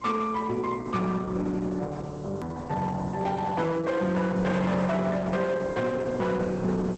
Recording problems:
lossy compression; Opus, log-spectral distance 4 dB
distorted audio; hard clipping, signal-to-distortion ratio 12 dB
hum; 60 Hz, harmonics up to 600 Hz, SNR 25 dB
hiss; slope +1 dB per octave, SNR 28 dB
click at an edit; at 2.5 s

